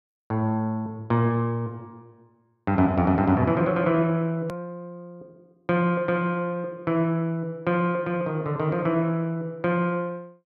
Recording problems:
click at an edit; at 4.5 s

